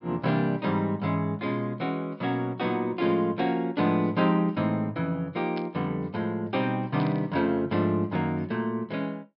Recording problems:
treble cut off; nothing above 5.3 kHz
burst of static; at 5.5 s and at 7 s; peak -10 dB vs average level

